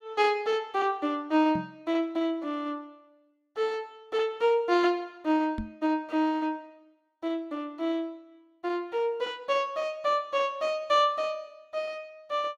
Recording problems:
microphone thump; at 1.5 s and at 5.5 s; peak -2 dB vs average level

